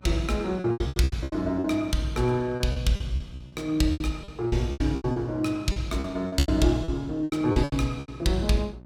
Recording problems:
hum; 60 Hz, harmonics up to 960 Hz, SNR 24 dB
lost packets; 17% of the sound replaced, filled with repeated pitch periods

